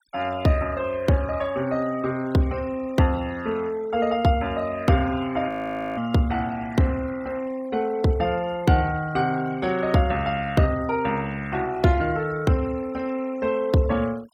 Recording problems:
noise reduction artefacts; signal-to-artefact ratio 21 dB
audio freezing; at 5.5 s

